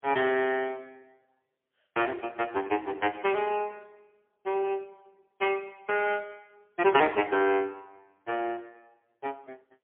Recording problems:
telephone audio; 300 Hz to 3.3 kHz, AMR-NB, then MP3

